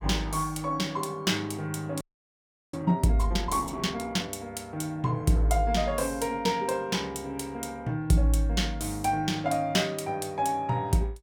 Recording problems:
audio freezing; at 2 s for 0.5 s

